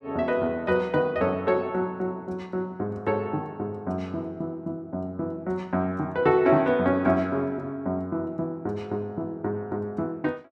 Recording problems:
none

